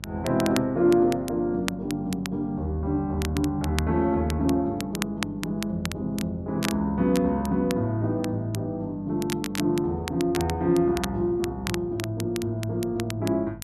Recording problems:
hum; 50 Hz, harmonics up to 550 Hz, SNR 19 dB
crackle; vinyl, SNR 12 dB

